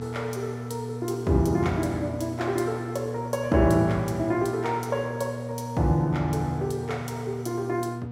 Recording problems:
hum; 60 Hz, harmonics up to 960 Hz, SNR 8 dB

